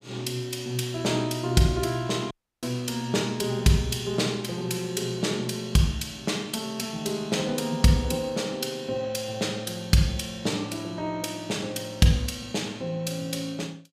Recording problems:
audio cutting out; at 2.5 s

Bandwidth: 15.5 kHz